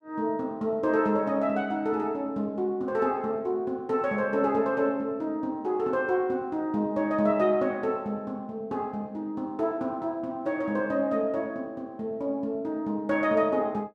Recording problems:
none

